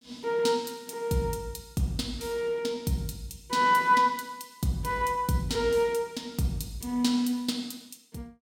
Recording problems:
none

